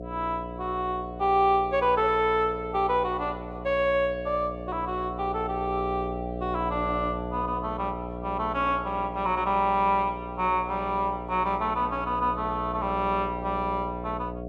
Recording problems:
electrical hum; 60 Hz, harmonics up to 720 Hz, SNR 9 dB

